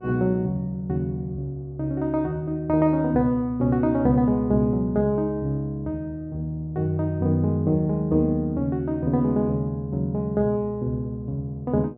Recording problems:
electrical hum; 60 Hz, harmonics up to 840 Hz, SNR 27 dB

